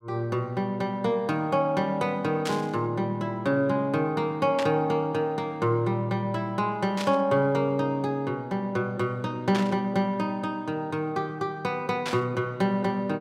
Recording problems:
burst of static; 5 times, first at 2.5 s; peak -2 dB vs average level

